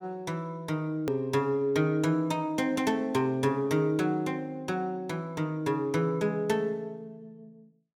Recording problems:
click at an edit; at 1 s

